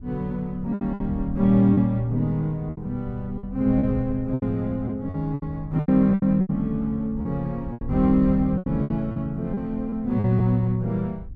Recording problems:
wind on the microphone; below 98 Hz, SNR 14 dB
lost packets; 11% of the sound replaced, filled with repeated pitch periods

